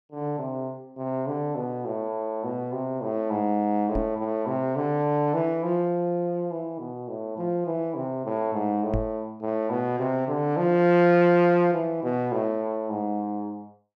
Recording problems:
microphone thump; at 4 s and at 9 s; peak +1 dB vs average level

